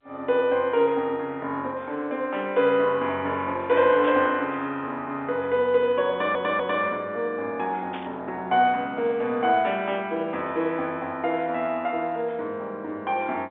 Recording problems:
telephone audio; 220 Hz to 3.6 kHz, G.711
static burst; at 4 s and at 8 s; peak -10 dB vs average level
stutter; at 6 s

